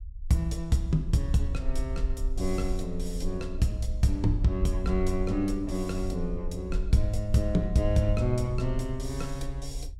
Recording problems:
rumble; below 50 Hz, SNR 7 dB

